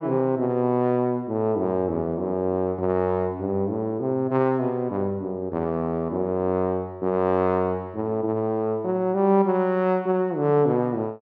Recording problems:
none

